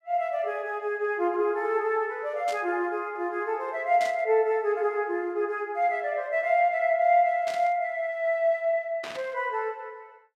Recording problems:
burst of static; 4 times, first at 2.5 s; peak -8 dB vs average level

